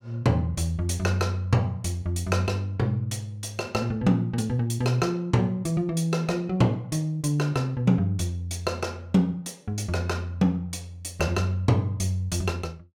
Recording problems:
none

